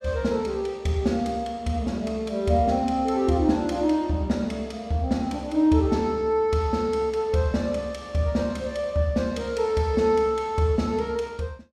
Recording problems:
none

